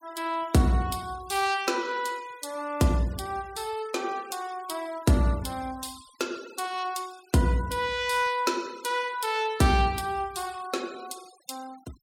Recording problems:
noise reduction artefacts; signal-to-artefact ratio 21 dB

